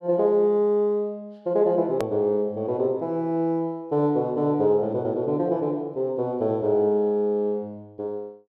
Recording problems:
hard cut with a click; at 2 s

